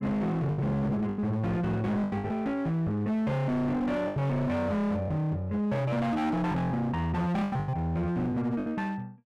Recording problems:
distorted audio; hard clipping, uneven, signal-to-distortion ratio 7 dB
packet loss; 7% of the sound replaced, filled with the last packet

